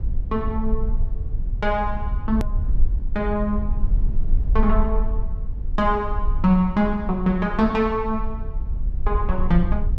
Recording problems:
rumble; below 50 Hz, SNR 3 dB
hard cut with a click; at 2.5 s

